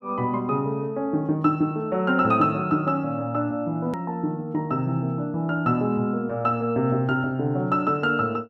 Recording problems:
click at an edit; at 4 s

